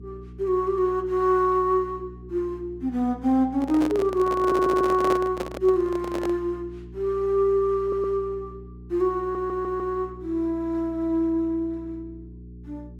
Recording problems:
electrical hum; 60 Hz, harmonics up to 420 Hz, SNR 18 dB
handling noise; from 3.5 to 6.5 s; peak 0 dB vs average level
audio stuttering; at 4.5 s, at 8 s and at 9 s

